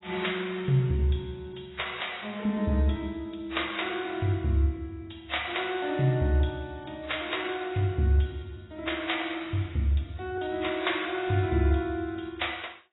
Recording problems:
lossy codec; AAC, log-spectral distance 6 dB, nothing above 3.8 kHz

